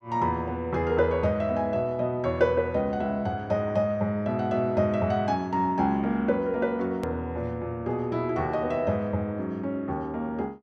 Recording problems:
hard cut with a click; at 7 s

